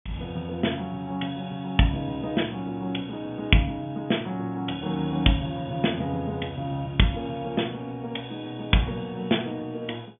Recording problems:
treble cut off; nothing above 3.5 kHz

